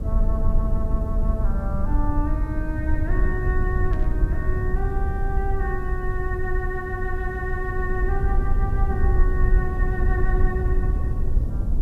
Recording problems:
hiss; SNR 30 dB
rumble; below 70 Hz, SNR -6 dB
burst of static; at 4 s; peak -12 dB vs average level

